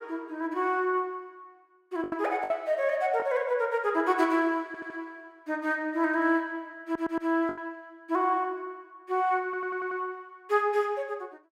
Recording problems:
lost packets; 3% of the sound replaced, filled with the last packet
audio stuttering; at 4.5 s, at 7 s and at 9.5 s

